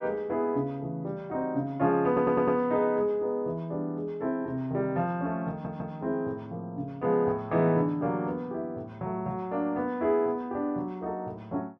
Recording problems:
stutter; at 2 s and at 5.5 s

